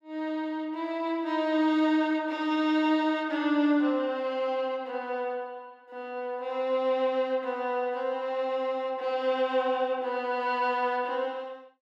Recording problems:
none

